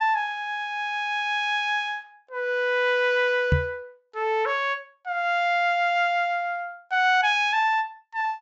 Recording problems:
treble cut off; nothing above 8 kHz
knock on the microphone; at 3.5 s; peak +6 dB vs average level

